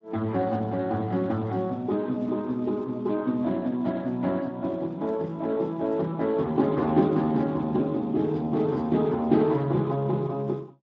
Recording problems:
codec artefacts; Speex, log-spectral distance 2 dB

